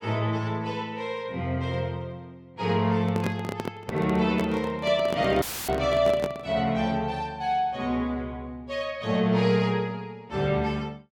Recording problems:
microphone handling noise; from 3 to 6.5 s; peak 0 dB vs average level
audio cutting out; at 5.5 s; filled with static

